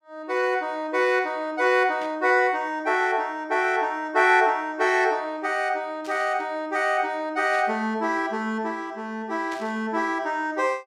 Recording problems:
static burst; 4 times, first at 2 s; peak -13 dB vs average level

